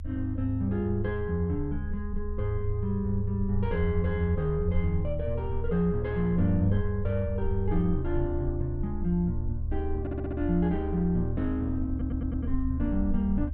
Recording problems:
rumble; below 76 Hz, SNR 6 dB
stutter; at 10 s and at 12 s

